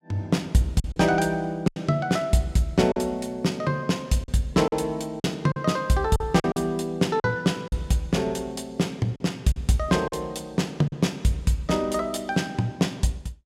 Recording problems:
packet loss; 5% of the sound replaced, filled with silence

